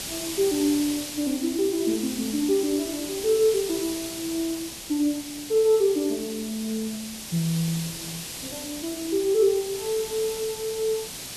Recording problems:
background hiss; SNR 8 dB

